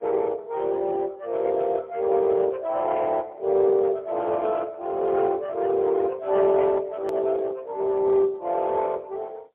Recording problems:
phone line; 340 Hz to 2.1 kHz, AMR-NB, then MP3
edit click; at 7 s

